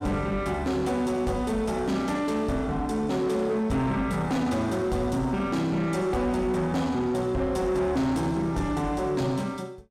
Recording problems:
distorted audio; soft clipping, signal-to-distortion ratio 11 dB

